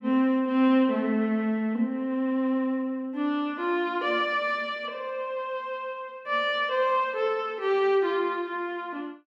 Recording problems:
none

